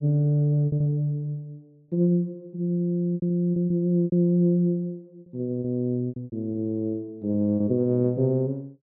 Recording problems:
packet loss; 10% of the sound replaced, filled with repeated pitch periods

